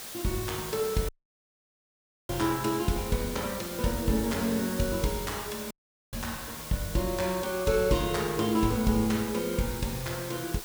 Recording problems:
hiss; slope -1 dB per octave, SNR 9 dB
dropout; at 1 s for 1 s and at 5.5 s

